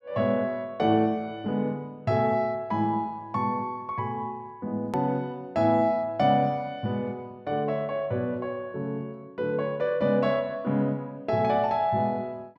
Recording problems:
click at an edit; at 5 s

